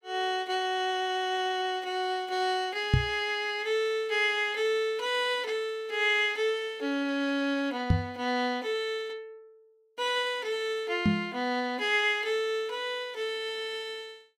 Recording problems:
microphone thump; at 3 s, at 8 s and at 11 s; peak +9 dB vs average level

